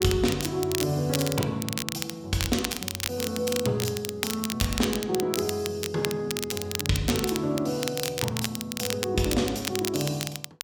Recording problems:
crackle; vinyl, SNR 4 dB

